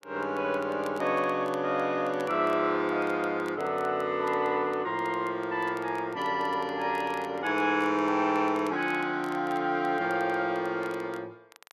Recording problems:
crackle; vinyl, SNR 26 dB

